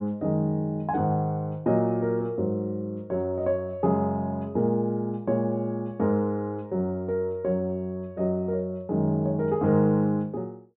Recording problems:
low-pass filter; nothing above 4 kHz

